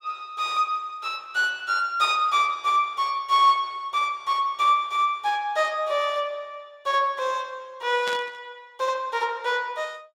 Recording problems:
burst of static; at 8 s; peak -5 dB vs average level

